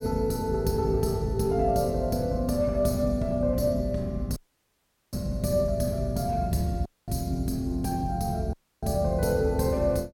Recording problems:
dropout; at 4.5 s for 1 s, at 7 s and at 8.5 s

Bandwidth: 16.5 kHz